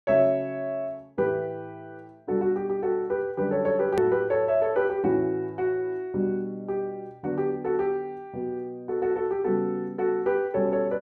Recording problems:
click at an edit; at 4 s

